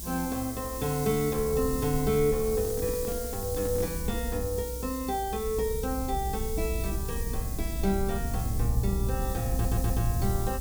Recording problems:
hiss; SNR 8 dB
rumble; below 84 Hz, SNR 4 dB
handling noise; from 2.5 to 4 s; peak -6 dB vs average level
audio stuttering; at 9.5 s

